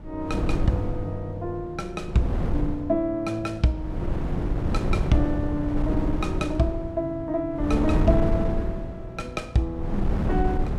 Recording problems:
wind on the microphone; below 170 Hz, SNR 1 dB

